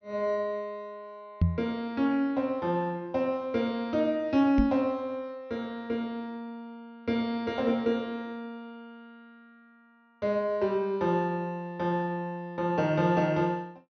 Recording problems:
low-pass filter; nothing above 6.2 kHz
microphone thump; at 1.5 s and at 4.5 s; peak +8 dB vs average level

